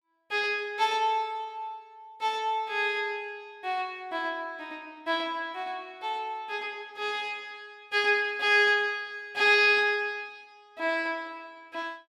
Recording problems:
none

